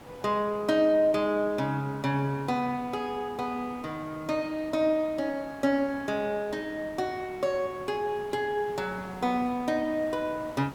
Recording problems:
hiss; SNR 18 dB

